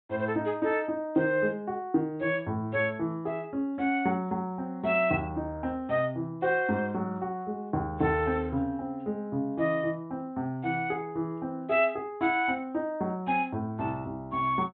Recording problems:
treble cut off; nothing above 4 kHz

